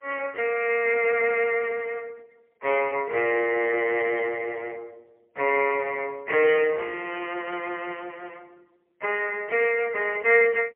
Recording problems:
phone line; 320 Hz to 3.1 kHz, AMR-NB, then MP3

